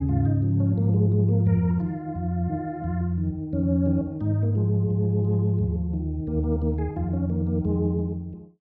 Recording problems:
none

